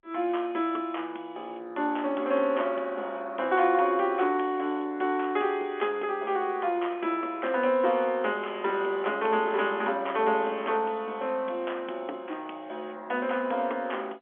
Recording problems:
phone line; 260 Hz to 3.4 kHz, G.711

